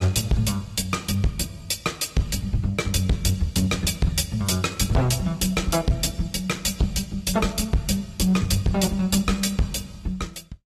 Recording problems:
lossy compression; AAC, log-spectral distance 4 dB, nothing above 14.7 kHz
distortion; hard clipping, uneven, signal-to-distortion ratio 7 dB

